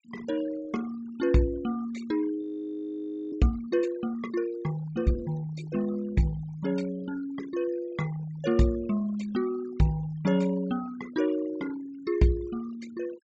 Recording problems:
low-pass filter; nothing above 8 kHz
denoising artefacts; signal-to-artefact ratio 20 dB
audio freezing; at 2.5 s for 1 s

